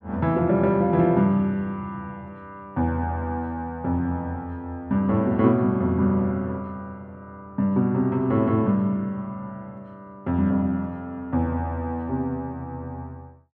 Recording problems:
none

